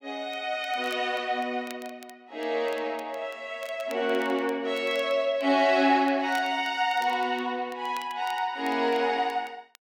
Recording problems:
crackling; vinyl, SNR 24 dB

